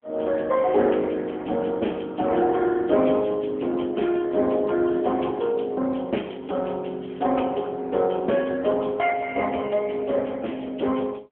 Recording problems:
telephone audio; 220 Hz to 3.3 kHz, AMR-NB

